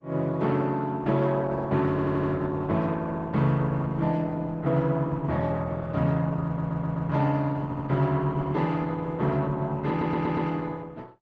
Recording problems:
lossy compression; Opus, log-spectral distance 3 dB, nothing above 7.3 kHz
stutter; 4 times, first at 2 s

